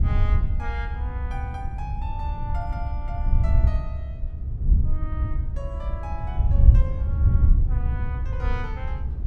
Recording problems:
rumble; below 74 Hz, SNR -4 dB
wind on the microphone; below 82 Hz, SNR -13 dB

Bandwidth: 14.5 kHz